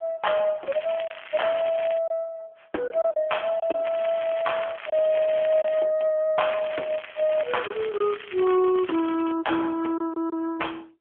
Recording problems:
phone line; 280 Hz to 3.4 kHz, AMR-NB
lost packets; 3% of the sound replaced, filled with silence
crackle; from 0.5 to 2 s, from 4 to 6 s and from 6.5 to 9.5 s; loose cable, SNR 14 dB

